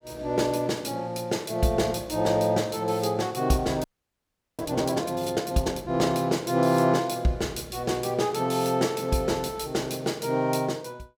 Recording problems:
frozen audio; at 4 s for 1 s

